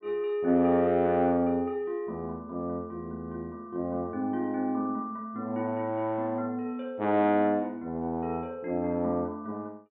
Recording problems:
low-pass filter; nothing above 4 kHz

